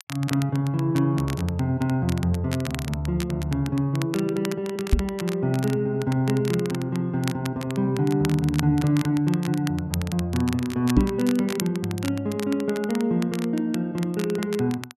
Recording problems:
crackle; vinyl, SNR 14 dB
microphone bump; at 5 s and at 11 s; peak +8 dB vs average level

